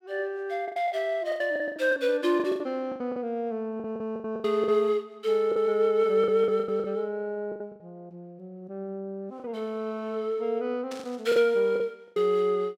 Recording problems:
packet loss; 12% of the sound replaced, filled with the last packet
burst of static; at 11 s; peak -11 dB vs average level

